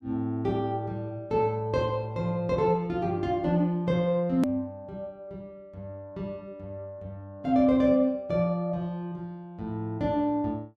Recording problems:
edit click; at 4.5 s

